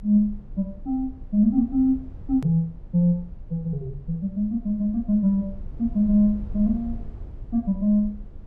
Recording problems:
low-frequency rumble; below 74 Hz, strongest tone 26 Hz, SNR 17 dB
click at an edit; at 2.5 s

